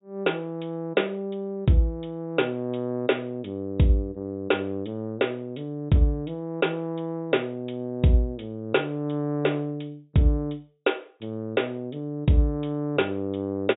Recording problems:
treble cut off; nothing above 4 kHz

